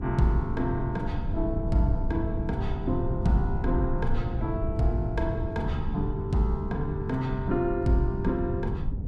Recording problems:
electrical hum; 50 Hz, harmonics up to 900 Hz, SNR 13 dB
rumble; below 110 Hz, SNR 3 dB

